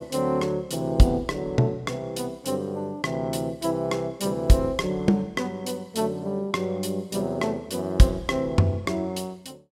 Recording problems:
none

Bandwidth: 16.5 kHz